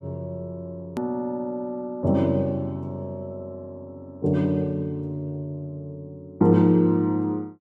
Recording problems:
click at an edit; at 1 s

